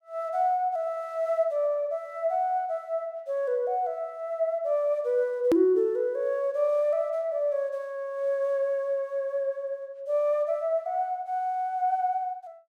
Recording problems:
hard cut with a click; at 5.5 s

